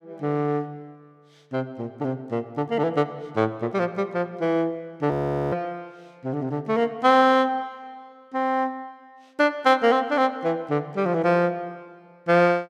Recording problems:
audio freezing; at 5 s

